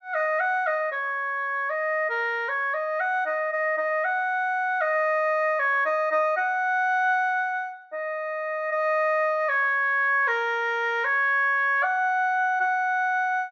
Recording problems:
treble cut off; nothing above 8 kHz

